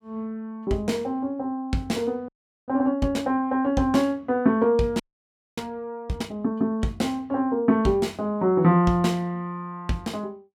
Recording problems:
audio freezing; at 2.5 s and at 5 s for 0.5 s

